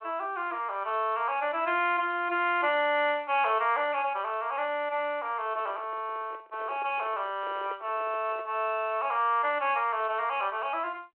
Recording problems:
telephone audio; 300 Hz to 3.2 kHz, G.726
microphone handling noise; from 5.5 to 8.5 s; peak -9 dB vs average level

